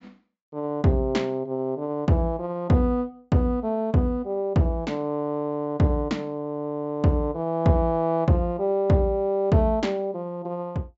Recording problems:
treble missing; nothing above 8 kHz

